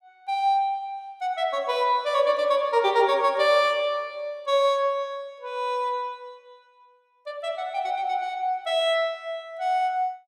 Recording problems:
none

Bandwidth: 14.5 kHz